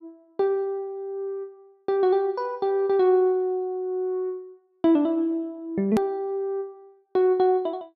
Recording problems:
edit click; at 6 s

